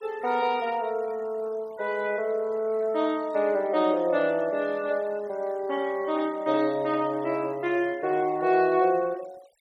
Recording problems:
noise reduction artefacts; signal-to-artefact ratio 25 dB

